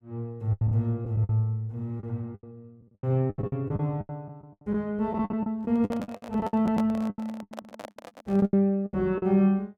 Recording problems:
packet loss; 16% of the sound replaced, filled with the last packet
handling noise; from 5.5 to 8.5 s; peak -4 dB vs average level

